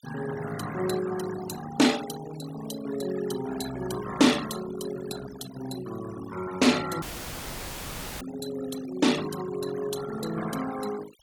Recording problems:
denoising artefacts; signal-to-artefact ratio 11 dB
audio cutting out; at 7 s for 1 s; filled with static

